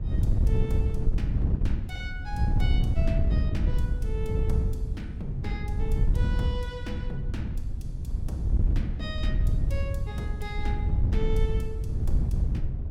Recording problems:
wind on the microphone; below 96 Hz, SNR -9 dB

